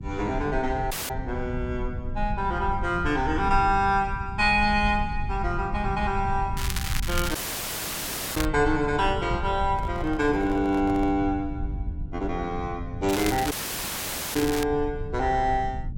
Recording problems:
rumble; below 98 Hz, SNR 8 dB
audio cutting out; at 1 s, at 7.5 s for 1 s and at 14 s for 1 s
crackle; from 6.5 to 8.5 s and from 13 to 15 s; loose cable, SNR 8 dB
handling noise; from 9.5 to 11 s; peak -11 dB vs average level

